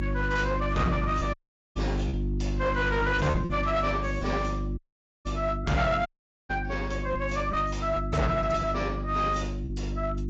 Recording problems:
lossy codec; AAC, log-spectral distance 2 dB
distortion; hard clipping, signal-to-distortion ratio 11 dB
hum; 50 Hz, harmonics up to 350 Hz, SNR 4 dB
lost packets; 2% of the sound replaced, filled with repeated pitch periods
audio cutting out; at 1.5 s, at 5 s and at 6 s

